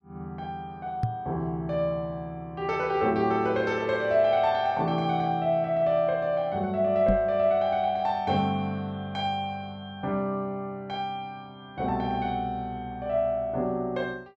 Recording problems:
knock on the microphone; at 1 s and at 7 s; peak +5 dB vs average level

